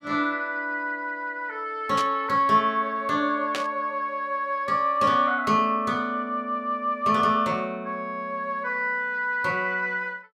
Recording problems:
burst of static; at 2 s and at 3.5 s; peak -1 dB vs average level

